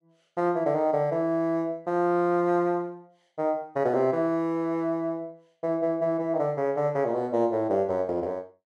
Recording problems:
none

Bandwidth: 12.5 kHz